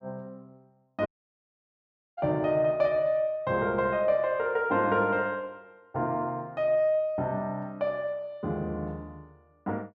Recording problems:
dropout; at 1 s for 1 s

